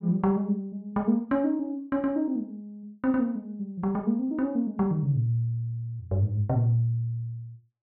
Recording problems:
none

